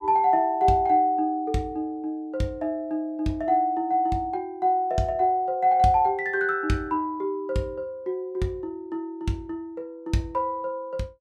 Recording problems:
none

